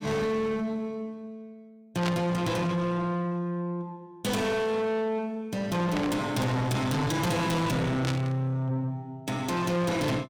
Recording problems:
distorted audio; soft clipping, signal-to-distortion ratio 7 dB
static burst; at 2 s, at 6 s and at 8 s; peak 0 dB vs average level

